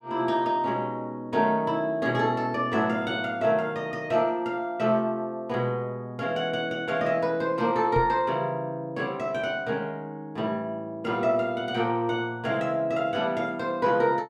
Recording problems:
microphone thump; at 8 s; peak -1 dB vs average level

